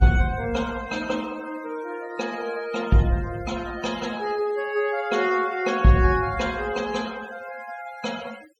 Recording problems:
denoising artefacts; signal-to-artefact ratio 17 dB

